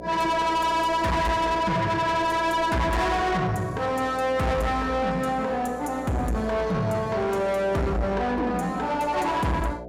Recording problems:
distortion; soft clipping, signal-to-distortion ratio 7 dB
hum; 60 Hz, harmonics up to 720 Hz, SNR 14 dB

